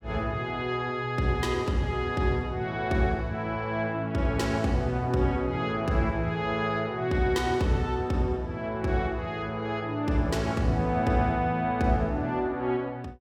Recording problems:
none

